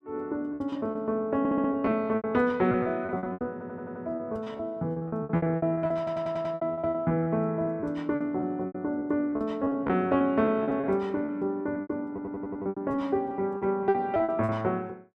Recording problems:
lost packets; 18% of the sound replaced, filled with repeated pitch periods
audio stuttering; 4 times, first at 1.5 s

